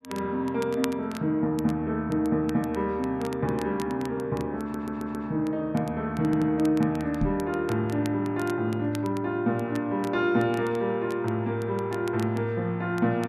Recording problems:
crackle; vinyl, SNR 20 dB
audio stuttering; at 4.5 s and at 6.5 s
knock on the microphone; at 7 s; peak +3 dB vs average level

